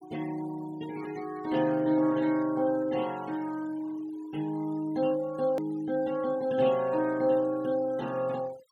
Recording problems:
denoising artefacts; signal-to-artefact ratio 22 dB
edit click; at 5.5 s

